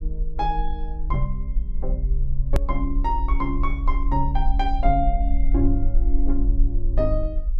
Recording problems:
rumble; below 44 Hz, strongest tone 20 Hz, SNR -2 dB
click at an edit; at 2.5 s

